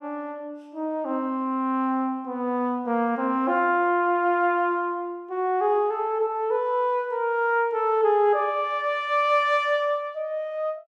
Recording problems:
none

